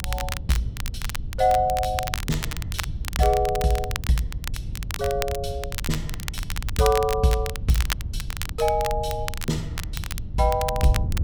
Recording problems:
wind noise; below 98 Hz, SNR 8 dB
crackle; vinyl, SNR 9 dB

